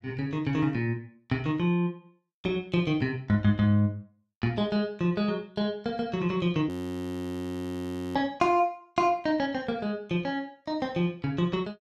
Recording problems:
audio freezing; at 6.5 s for 1.5 s

